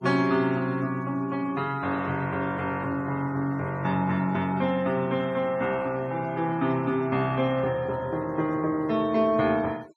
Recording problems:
denoising artefacts; signal-to-artefact ratio 24 dB

